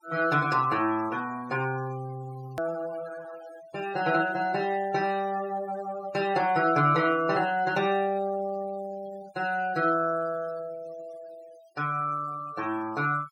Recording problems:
denoising artefacts; signal-to-artefact ratio 20 dB
edit click; at 2.5 s

